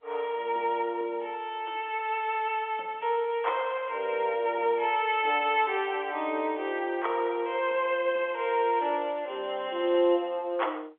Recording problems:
phone line; 320 Hz to 3.5 kHz, G.711

